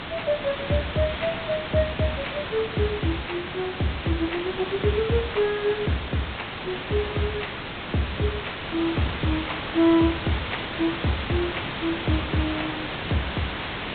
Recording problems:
low-pass filter; nothing above 4 kHz
hiss; SNR 4 dB

